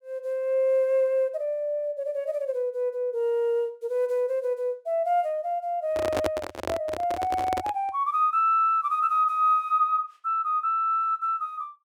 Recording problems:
microphone handling noise; from 6 to 8 s; peak +2 dB vs average level

